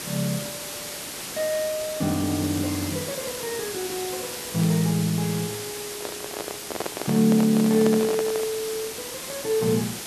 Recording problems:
background hiss; slope -1 dB per octave, SNR 7 dB
crackling; vinyl, SNR 28 dB
handling noise; from 6 to 8.5 s; peak 0 dB vs average level

